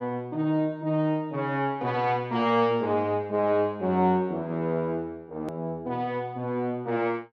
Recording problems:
hard cut with a click; at 5.5 s

